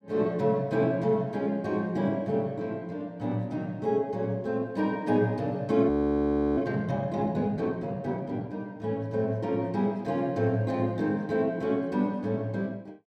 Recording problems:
frozen audio; at 6 s for 0.5 s

